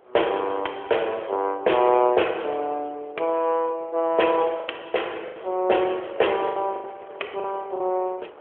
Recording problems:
phone line; 320 Hz to 3.3 kHz, AMR-NB
wind noise; below 950 Hz, SNR 22 dB
packet loss; 5% of the sound replaced, filled with the last packet

